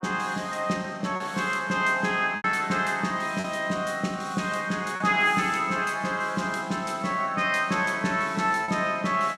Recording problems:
packet loss; 3% of the sound replaced, filled with repeated pitch periods

